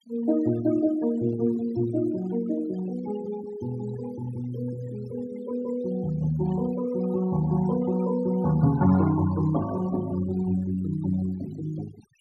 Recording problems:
noise reduction artefacts; signal-to-artefact ratio 18 dB

